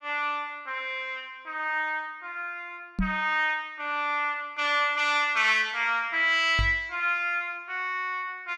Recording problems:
knock on the microphone; at 3 s and at 6.5 s; peak +2 dB vs average level

